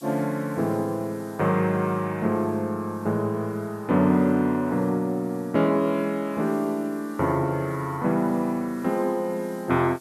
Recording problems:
background hiss; SNR 27 dB

